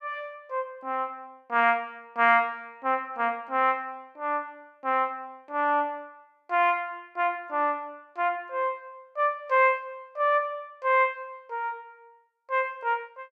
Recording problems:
none

